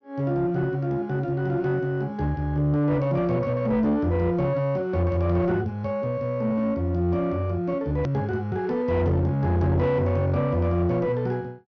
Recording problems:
treble missing; nothing above 6.3 kHz
distorted audio; soft clipping, signal-to-distortion ratio 10 dB
edit click; at 8 s

